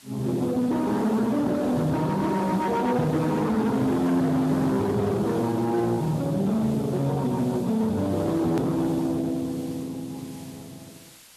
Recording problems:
lossy codec; Speex, log-spectral distance 3 dB, nothing above 13.1 kHz
distorted audio; hard clipping, uneven, signal-to-distortion ratio 5 dB
hiss; slope +1 dB per octave, SNR 23 dB
hard cut with a click; at 8.5 s

